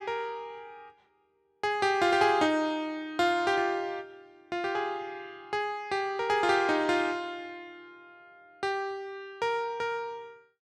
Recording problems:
none

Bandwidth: 12.5 kHz